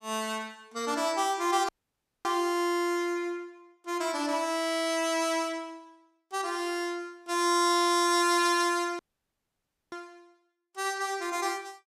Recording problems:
dropout; at 1.5 s for 0.5 s and at 9 s for 1 s

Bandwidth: 15 kHz